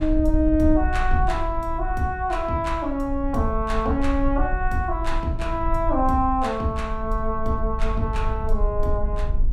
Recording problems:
low-frequency rumble; below 54 Hz, SNR 5 dB

